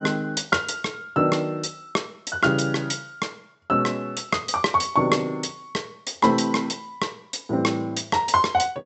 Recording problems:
low-pass filter; nothing above 7.9 kHz

